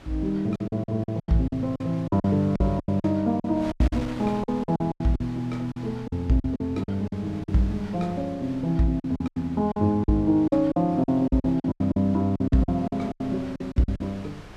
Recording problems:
wind noise; below 1.4 kHz, SNR 19 dB
packet loss; 16% of the sound replaced, filled with silence

